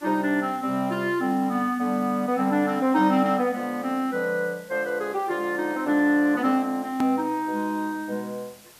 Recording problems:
background hiss; slope -1 dB per octave, SNR 24 dB
click at an edit; at 7 s

